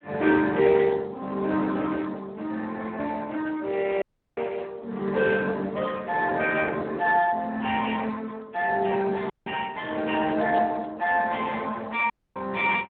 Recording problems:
phone line; 220 Hz to 3.5 kHz, Speex
dropout; at 4 s, at 9.5 s and at 12 s

